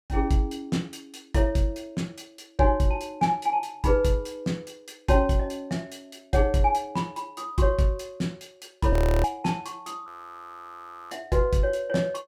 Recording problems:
audio freezing; at 9 s and at 10 s for 1 s

